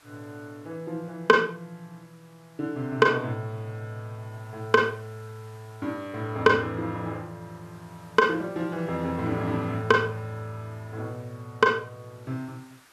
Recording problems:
hiss; SNR 29 dB

